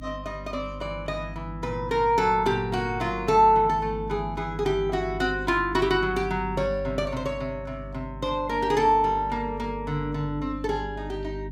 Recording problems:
hum; 50 Hz, harmonics up to 300 Hz, SNR 13 dB

